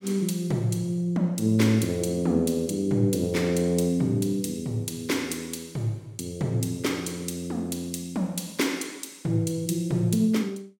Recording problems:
none

